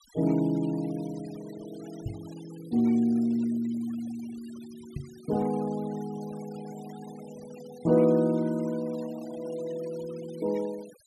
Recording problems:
noise reduction artefacts; signal-to-artefact ratio 23 dB
microphone thump; at 2 s and at 5 s; peak -1 dB vs average level

